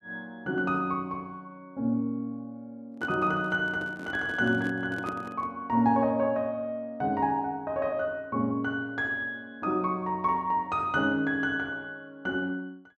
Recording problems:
microphone handling noise; from 3 to 5.5 s; peak -3 dB vs average level

